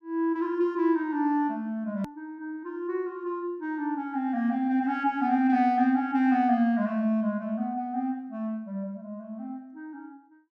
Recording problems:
click at an edit; at 2 s

